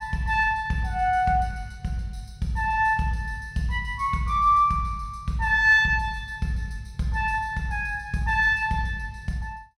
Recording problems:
none

